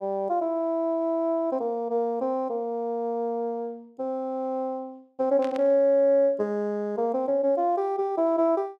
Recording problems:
static burst; at 5.5 s; peak -11 dB vs average level

